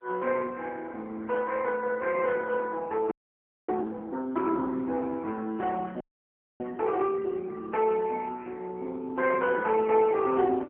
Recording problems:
phone line; 240 Hz to 2.6 kHz, AMR-NB
frozen audio; at 3 s for 0.5 s and at 6 s for 0.5 s

